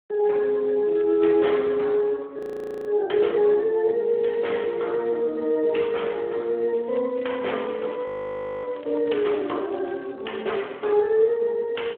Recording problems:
phone line; 280 Hz to 3.4 kHz, Speex
crackling; at 1 s, at 4 s and from 6.5 to 11 s; loose cable, SNR 27 dB
audio freezing; at 2.5 s and at 8 s for 0.5 s

